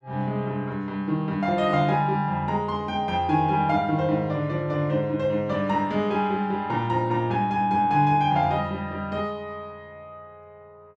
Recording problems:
none

